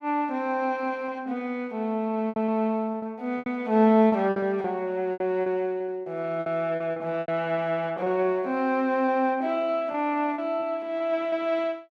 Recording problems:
packet loss; 8% of the sound replaced, filled with repeated pitch periods

